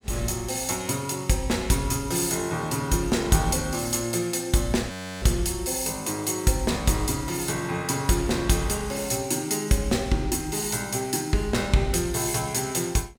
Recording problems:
audio freezing; at 5 s

